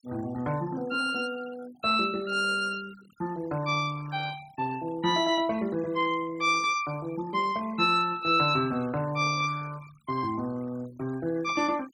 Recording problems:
noise reduction artefacts; signal-to-artefact ratio 22 dB

